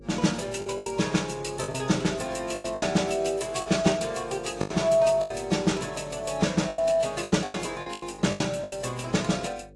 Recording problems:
codec artefacts; AAC, log-spectral distance 3 dB, nothing above 11.3 kHz
hum; 50 Hz, harmonics up to 550 Hz, SNR 23 dB
packet loss; 11% of the sound replaced, filled with the last packet

